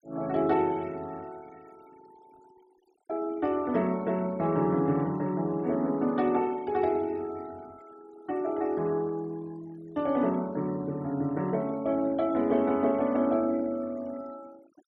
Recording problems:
noise reduction artefacts; signal-to-artefact ratio 25 dB

